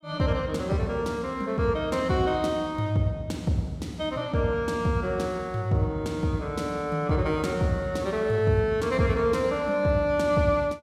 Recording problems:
none

